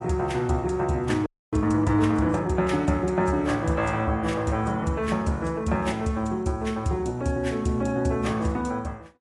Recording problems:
codec artefacts; AAC, log-spectral distance 2 dB, nothing above 10.7 kHz
audio freezing; at 1.5 s

